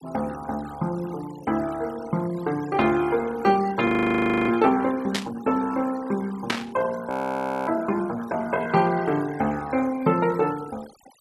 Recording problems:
denoising artefacts; signal-to-artefact ratio 19 dB
frozen audio; at 4 s for 0.5 s and at 7 s for 0.5 s
static burst; at 5 s and at 6.5 s; peak +4 dB vs average level

